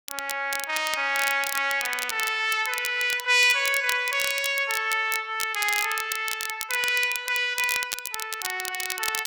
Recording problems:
crackling; vinyl, SNR 8 dB

